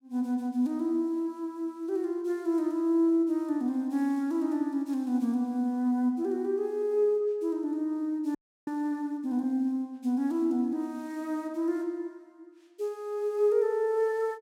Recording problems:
frozen audio; at 8.5 s

